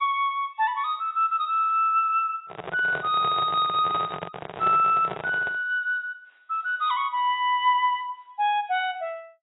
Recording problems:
codec artefacts; AAC, log-spectral distance 2 dB, nothing above 3.4 kHz
microphone handling noise; from 2.5 to 5.5 s; peak -5 dB vs average level

